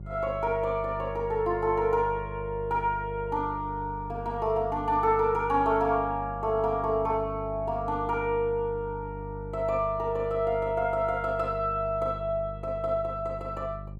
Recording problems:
hum; 50 Hz, harmonics up to 400 Hz, SNR 12 dB

